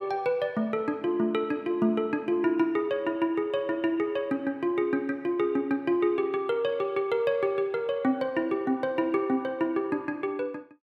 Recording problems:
none

